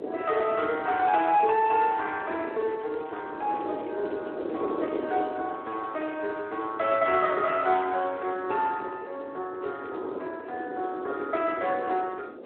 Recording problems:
phone line; 300 Hz to 3.3 kHz, Speex
wind noise; below 510 Hz, SNR 9 dB
crackle; at 0.5 s, from 2.5 to 5 s and at 9.5 s; loose cable, SNR 28 dB

